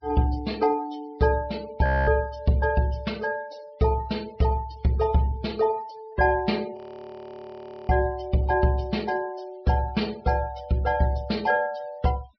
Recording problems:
low-pass filter; nothing above 5.5 kHz
denoising artefacts; signal-to-artefact ratio 23 dB
frozen audio; at 2 s and at 7 s for 1 s

